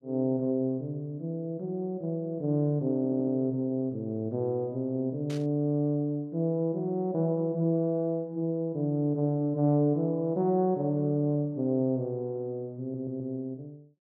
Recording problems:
stutter; at 3 s and at 13 s
static burst; at 5.5 s; peak -12 dB vs average level

